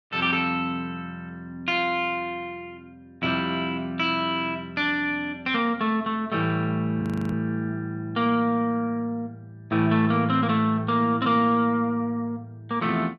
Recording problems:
frozen audio; at 7 s

